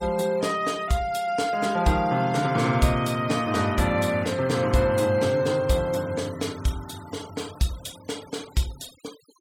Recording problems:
noise reduction artefacts; signal-to-artefact ratio 20 dB

